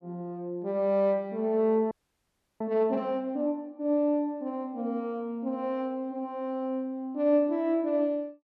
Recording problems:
audio freezing; at 2 s for 0.5 s

